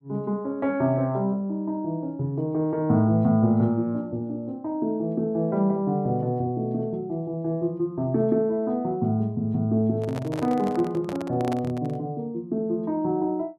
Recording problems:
handling noise; from 10 to 12 s; peak -5 dB vs average level

